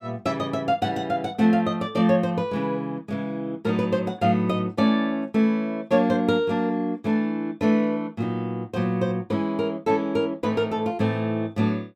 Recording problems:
none

